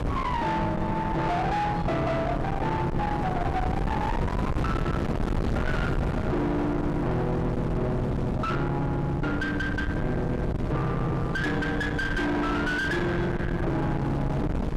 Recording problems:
distortion; soft clipping, signal-to-distortion ratio 6 dB
wind on the microphone; below 630 Hz, SNR 2 dB

